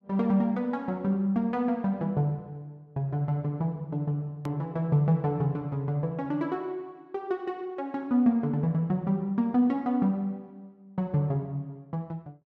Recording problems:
click at an edit; at 4.5 s

